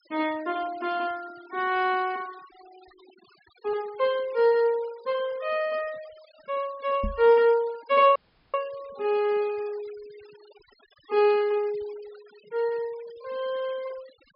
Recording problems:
treble missing; nothing above 5.5 kHz
denoising artefacts; signal-to-artefact ratio 24 dB
microphone bump; at 7 s; peak -2 dB vs average level
audio cutting out; at 8 s

